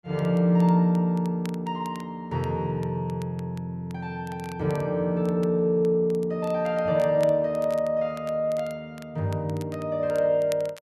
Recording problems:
crackling; vinyl, SNR 25 dB

